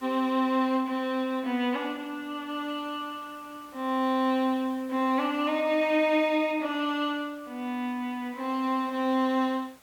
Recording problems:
hiss; slope -2 dB per octave, SNR 27 dB

